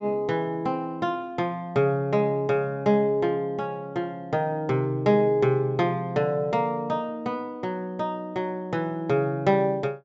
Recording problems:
treble missing; nothing above 8 kHz

